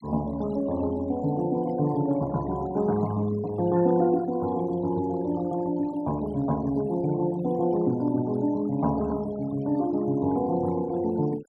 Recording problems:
noise reduction artefacts; signal-to-artefact ratio 20 dB

